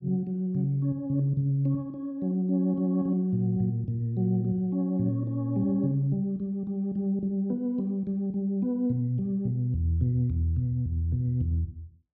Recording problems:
none

